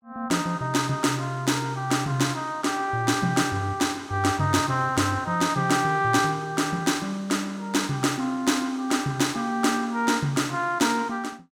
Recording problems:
none

